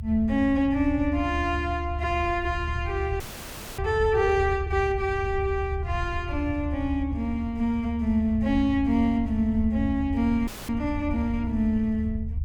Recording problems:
low-frequency rumble; below 86 Hz, strongest tone 74 Hz, SNR 7 dB
audio freezing; at 3 s for 0.5 s and at 10 s

